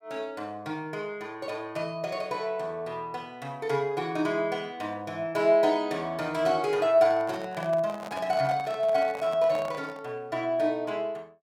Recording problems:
microphone handling noise; from 7 to 10 s; peak -7 dB vs average level

